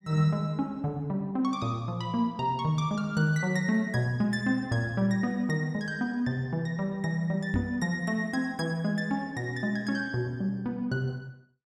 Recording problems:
microphone bump; at 7.5 s; peak +2 dB vs average level

